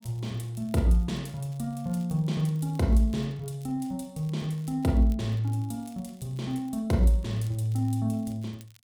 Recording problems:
crackling; vinyl, SNR 30 dB

